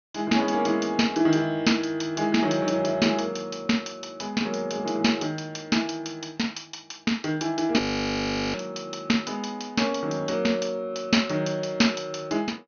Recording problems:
low-pass filter; nothing above 6.5 kHz
frozen audio; at 8 s for 0.5 s

